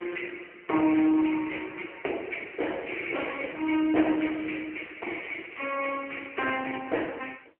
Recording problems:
phone line; 280 Hz to 3.1 kHz, AMR-NB

